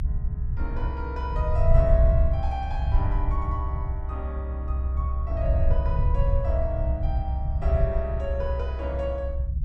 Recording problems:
rumble; below 74 Hz, SNR -6 dB

